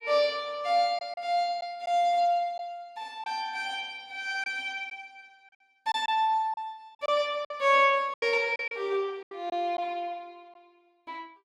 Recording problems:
packet loss; 5% of the sound replaced, filled with silence

